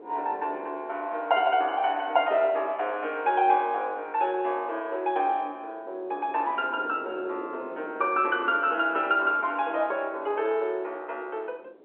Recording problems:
phone line; 340 Hz to 3.3 kHz, G.711
wind noise; below 560 Hz, SNR 19 dB

